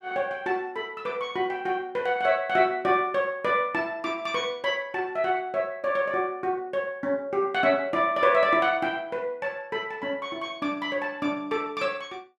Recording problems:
none

